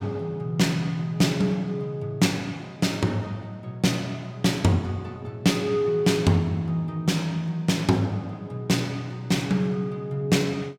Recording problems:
none

